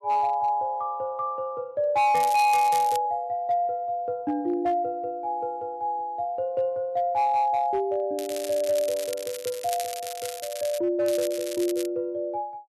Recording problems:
distorted audio; hard clipping, signal-to-distortion ratio 12 dB
crackle; at 2 s, from 8 to 11 s and at 11 s; loose cable, SNR 12 dB

